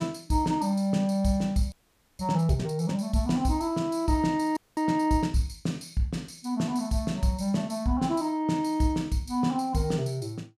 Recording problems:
audio freezing; at 1.5 s and at 4.5 s

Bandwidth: 15 kHz